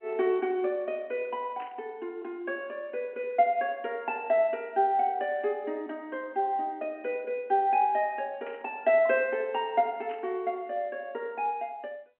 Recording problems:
phone line; 220 Hz to 3.1 kHz, G.711
static burst; at 1.5 s, at 8.5 s and at 10 s; peak -14 dB vs average level

